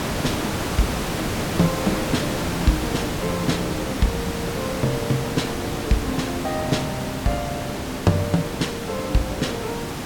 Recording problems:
background hiss; slope -5 dB per octave, SNR 1 dB

